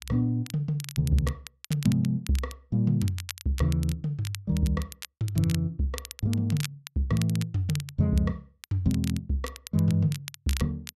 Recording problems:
crackle; vinyl, SNR 14 dB

